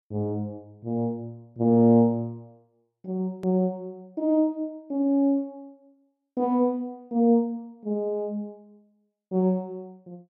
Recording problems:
click at an edit; at 3.5 s

